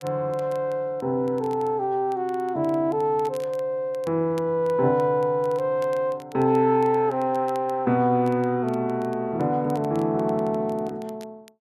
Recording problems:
crackling; vinyl, SNR 29 dB

